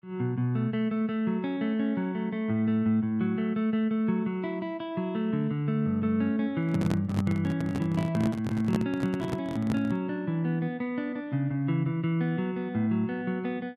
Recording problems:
handling noise; from 6.5 to 10 s; peak +2 dB vs average level

